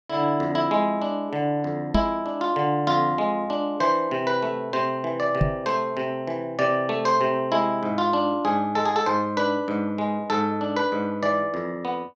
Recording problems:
microphone bump; at 2 s and at 5.5 s; peak +6 dB vs average level

